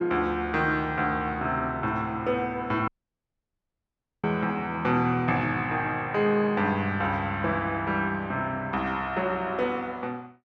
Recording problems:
audio cutting out; at 3 s for 1.5 s

